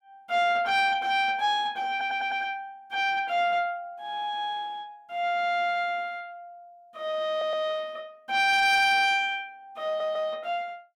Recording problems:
distortion; soft clipping, signal-to-distortion ratio 11 dB
audio stuttering; at 2 s, at 7.5 s and at 10 s

